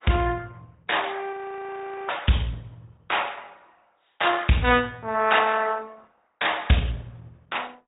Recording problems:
treble cut off; nothing above 3.8 kHz
codec artefacts; Opus, log-spectral distance 4 dB
frozen audio; at 1.5 s for 1 s

